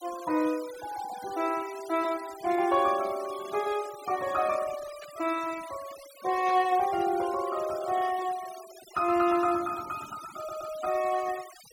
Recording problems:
noise reduction artefacts; signal-to-artefact ratio 17 dB
burst of static; at 5 s and at 6.5 s; peak -15 dB vs average level
audio stuttering; at 10 s

